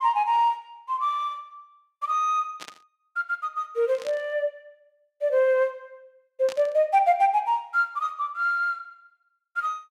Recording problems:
static burst; at 2.5 s, at 4 s and at 6.5 s; peak -9 dB vs average level

